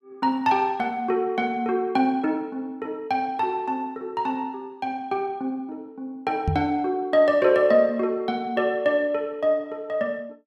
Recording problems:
microphone thump; at 6.5 s; peak +3 dB vs average level

